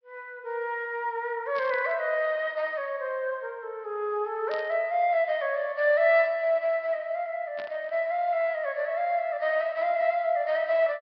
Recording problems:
treble missing; nothing above 5.5 kHz
static burst; at 1.5 s, at 4.5 s and at 7.5 s; peak -12 dB vs average level

